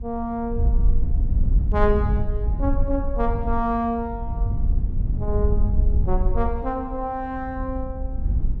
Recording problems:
wind on the microphone; below 68 Hz, SNR -2 dB

